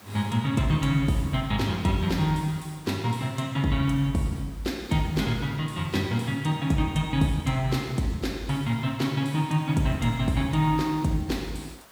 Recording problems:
background hiss; SNR 24 dB

